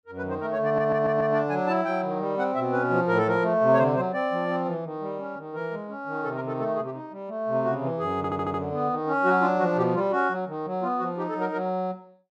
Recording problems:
stutter; at 0.5 s and at 8 s

